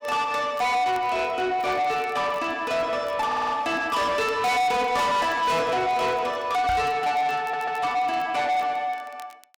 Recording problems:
distortion; soft clipping, signal-to-distortion ratio 8 dB
crackling; vinyl, SNR 29 dB
stutter; at 3.5 s and at 7.5 s
microphone thump; at 6.5 s; peak 0 dB vs average level

